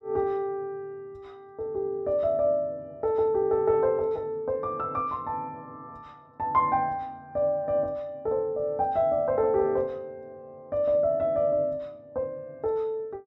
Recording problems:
none

